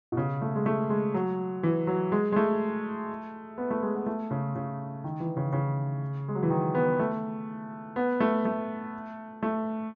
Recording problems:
low-pass filter; nothing above 6.9 kHz

